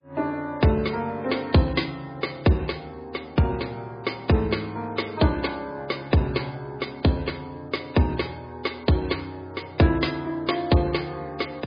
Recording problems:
lossy codec; MP3, log-spectral distance 5 dB, nothing above 4.1 kHz

